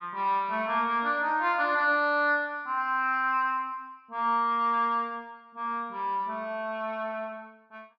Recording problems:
none

